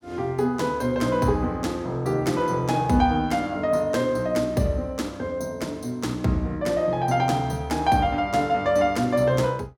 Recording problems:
none

